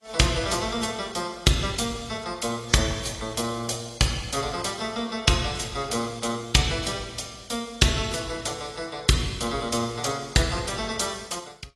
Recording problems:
lossy codec; AAC, log-spectral distance 6 dB, nothing above 11.3 kHz

